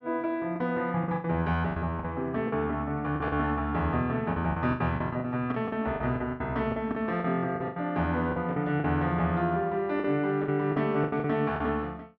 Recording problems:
lost packets; 13% of the sound replaced, filled with the last packet

